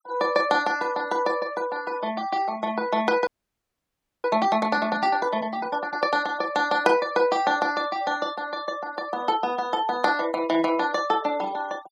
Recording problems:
noise reduction artefacts; signal-to-artefact ratio 21 dB
frozen audio; at 3.5 s for 1 s

